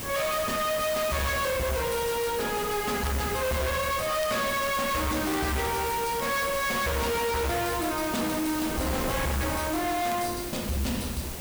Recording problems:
distorted audio; hard clipping, signal-to-distortion ratio 6 dB
hiss; slope 0 dB per octave, SNR 7 dB
wind noise; below 710 Hz, SNR 12 dB
crackle; vinyl, SNR 27 dB

